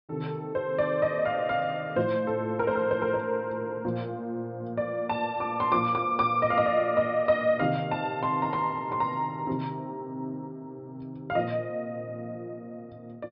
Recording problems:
treble missing; nothing above 5.1 kHz

